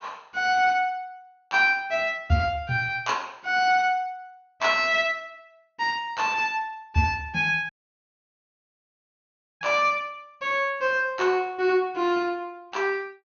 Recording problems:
treble missing; nothing above 6.6 kHz
audio cutting out; at 7.5 s for 2 s

